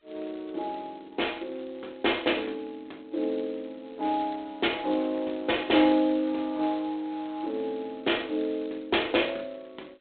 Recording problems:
telephone audio; 260 Hz to 3.7 kHz, G.726

